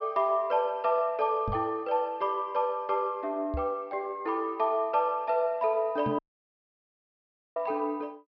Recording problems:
treble cut off; nothing above 5.5 kHz
microphone thump; at 1.5 s, at 3.5 s and at 6 s; peak -2 dB vs average level
audio cutting out; at 6 s for 1.5 s

